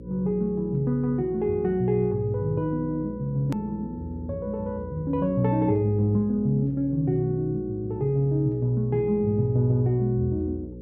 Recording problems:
electrical hum; 60 Hz, harmonics up to 540 Hz, SNR 15 dB
click at an edit; at 3.5 s

